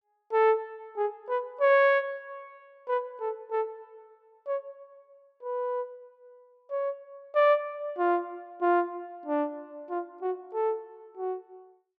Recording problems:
none

